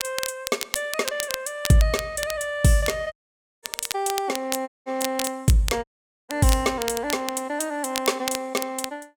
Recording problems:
crackling; vinyl, SNR 7 dB
dropout; at 3 s for 0.5 s, at 4.5 s and at 6 s

